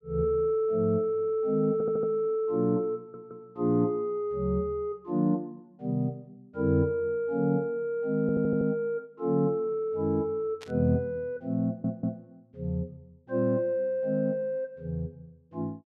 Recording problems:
stutter; 4 times, first at 1.5 s
burst of static; at 11 s; peak -12 dB vs average level

